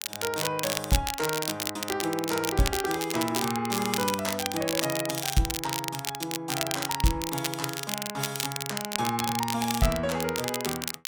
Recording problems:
crackling; vinyl, SNR 2 dB

